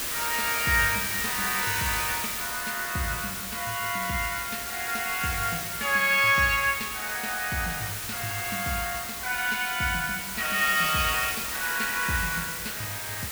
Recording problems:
background hiss; slope 0 dB per octave, SNR 3 dB

